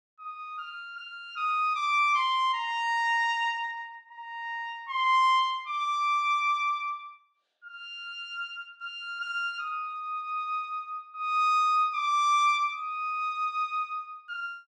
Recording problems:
none

